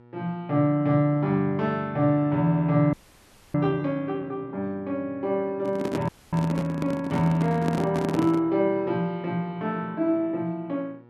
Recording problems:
electrical hum; 60 Hz, harmonics up to 1.8 kHz, SNR 27 dB
audio freezing; at 3 s for 0.5 s and at 6 s
handling noise; from 5.5 to 8.5 s; peak +1 dB vs average level

